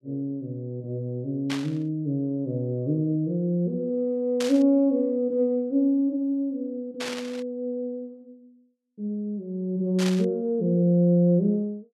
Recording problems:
burst of static; 4 times, first at 1.5 s; peak -3 dB vs average level

